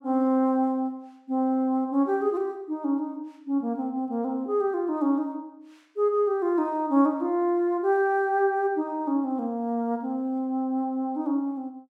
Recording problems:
none

